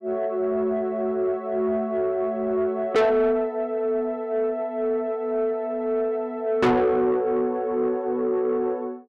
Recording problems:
distortion; soft clipping, signal-to-distortion ratio 10 dB

